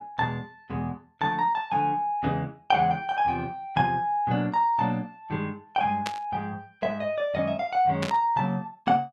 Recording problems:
burst of static; at 6 s and at 8 s; peak -1 dB vs average level

